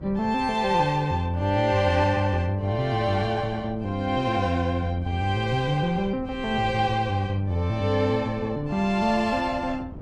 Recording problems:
wind on the microphone; below 210 Hz, SNR 17 dB

